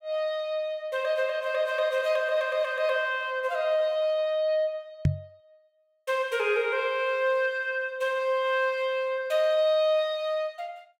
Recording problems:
microphone thump; at 5 s; peak +6 dB vs average level

